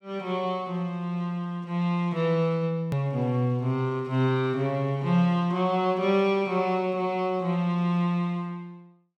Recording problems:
click at an edit; at 3 s

